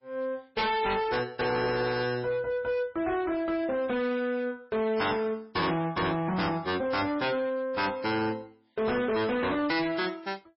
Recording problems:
lossy compression; MP3, log-spectral distance 4 dB, nothing above 5.3 kHz
distorted audio; hard clipping, signal-to-distortion ratio 6 dB

